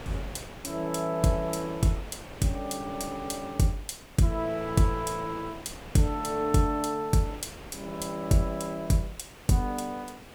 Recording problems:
background hiss; SNR 24 dB
wind on the microphone; below 1.4 kHz, SNR 16 dB

